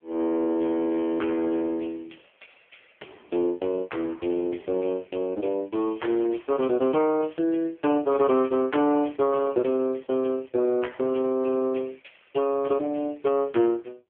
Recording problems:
phone line; 260 Hz to 3.3 kHz, AMR-NB

